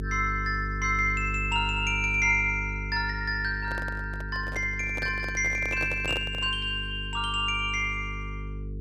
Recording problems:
hum; 50 Hz, harmonics up to 450 Hz, SNR 9 dB
microphone handling noise; from 3.5 to 6.5 s; peak -4 dB vs average level

